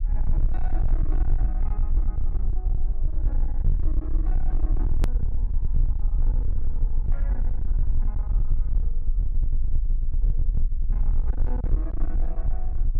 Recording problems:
distortion; hard clipping, signal-to-distortion ratio 8 dB
rumble; below 42 Hz, strongest tone 20 Hz, SNR -15 dB
click at an edit; at 5 s

